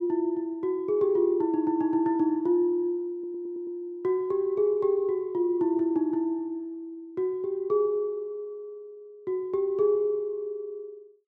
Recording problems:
audio stuttering; at 3 s

